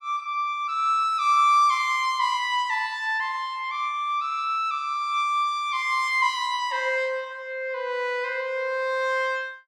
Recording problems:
none

